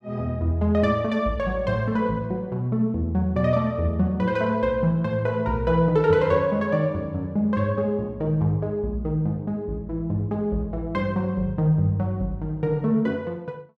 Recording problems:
none

